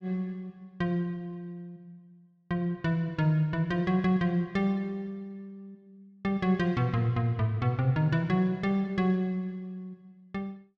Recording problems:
none

